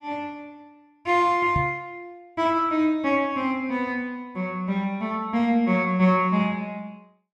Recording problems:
microphone bump; at 1.5 s; peak 0 dB vs average level

